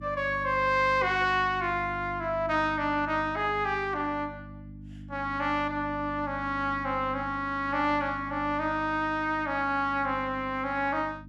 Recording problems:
hum; 50 Hz, harmonics up to 300 Hz, SNR 15 dB

